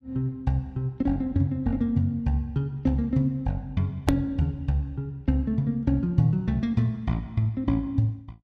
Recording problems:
edit click; at 4 s

